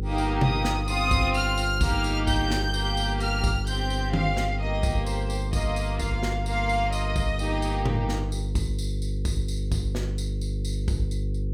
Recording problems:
hum; 50 Hz, harmonics up to 500 Hz, SNR 2 dB

